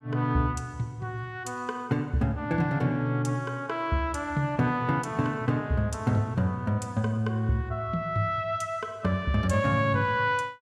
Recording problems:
none

